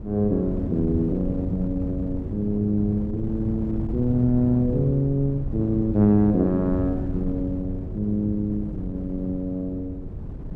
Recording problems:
wind on the microphone; below 180 Hz, SNR 8 dB

